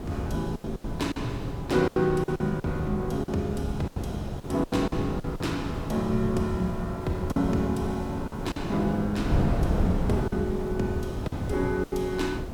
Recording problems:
electrical hum; 60 Hz, harmonics up to 360 Hz, SNR 23 dB
background hiss; SNR 20 dB
wind on the microphone; below 260 Hz, SNR 4 dB
lost packets; 8% of the sound replaced, filled with silence

